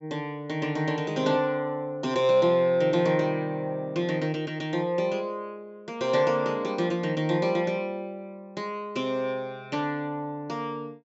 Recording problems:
treble missing; nothing above 8 kHz

